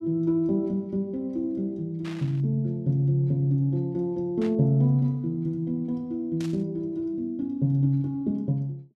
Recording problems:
burst of static; at 2 s, at 4.5 s and at 6.5 s; peak -12 dB vs average level

